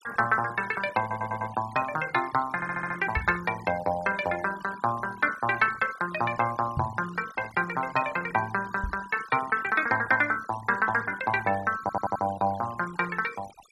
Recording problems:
noise reduction artefacts; signal-to-artefact ratio 17 dB
stutter; at 1 s, at 2.5 s and at 12 s
microphone thump; at 3 s, at 7 s and at 9 s; peak 0 dB vs average level

